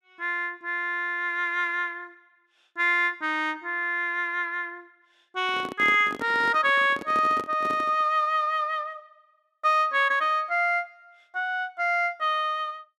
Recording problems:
microphone handling noise; from 5.5 to 8 s; peak -6 dB vs average level

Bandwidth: 14 kHz